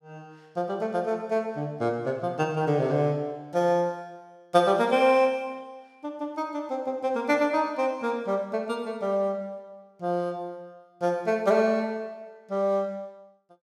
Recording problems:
none

